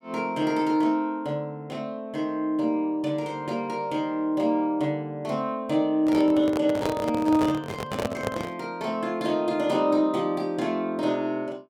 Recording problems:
microphone handling noise; from 6 to 8.5 s; peak +1 dB vs average level

